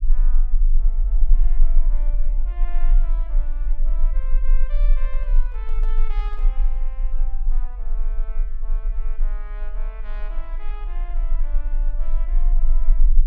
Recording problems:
rumble; below 30 Hz, strongest tone 20 Hz, SNR -20 dB
microphone handling noise; from 5 to 6.5 s; peak +1 dB vs average level

